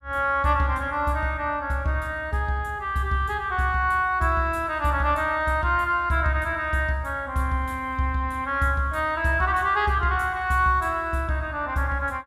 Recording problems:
none

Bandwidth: 16.5 kHz